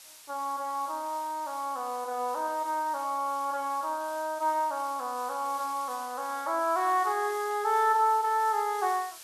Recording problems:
background hiss; slope +3 dB per octave, SNR 17 dB

